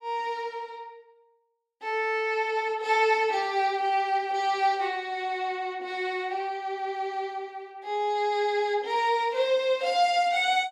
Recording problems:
none

